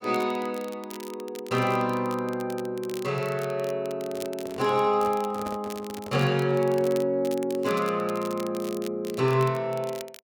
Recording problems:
crackle; vinyl, SNR 18 dB
handling noise; from 4 to 7 s; peak -6 dB vs average level

